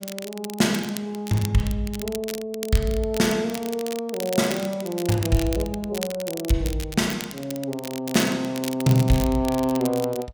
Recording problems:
crackle; vinyl, SNR 11 dB

